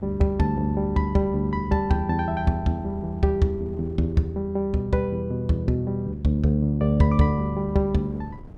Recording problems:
wind on the microphone; below 230 Hz, SNR 21 dB

